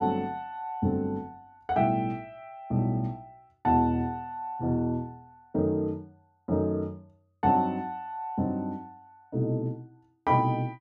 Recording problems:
none

